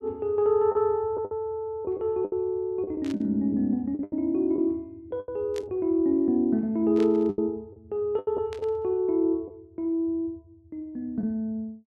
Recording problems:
lost packets; 7% of the sound replaced, filled with the last packet
static burst; 4 times, first at 3 s; peak -11 dB vs average level

